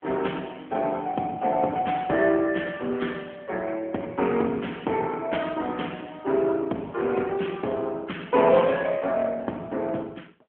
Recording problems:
phone line; 220 Hz to 3.3 kHz, AMR-NB

